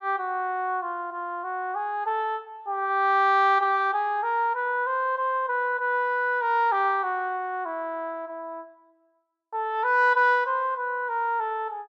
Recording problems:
none

